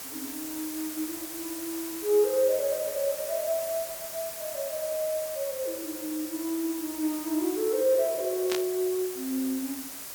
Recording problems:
hiss; slope -1 dB per octave, SNR 7 dB
static burst; at 8.5 s; peak +1 dB vs average level

